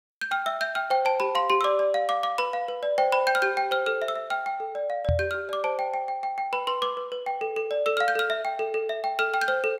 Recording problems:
knock on the microphone; at 5 s; peak +3 dB vs average level

